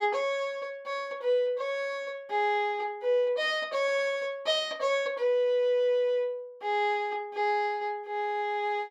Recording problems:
none

